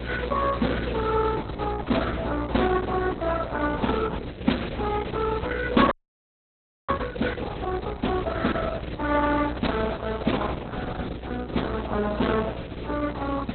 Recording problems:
lossy codec; AAC, then Opus, log-spectral distance 15 dB, nothing above 4.1 kHz
hum; 60 Hz, harmonics up to 540 Hz, SNR 11 dB
hiss; SNR 16 dB
audio freezing; at 6 s for 1 s

